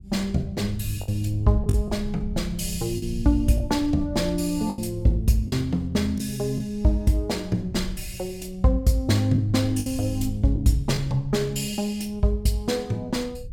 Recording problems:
low-frequency rumble; below 96 Hz, SNR 14 dB
lost packets; 4% of the sound replaced, filled with the last packet

